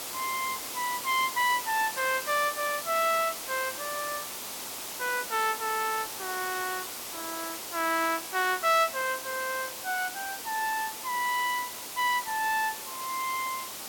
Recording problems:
background hiss; SNR 6 dB

